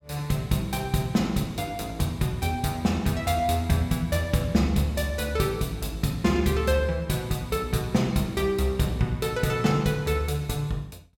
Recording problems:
none

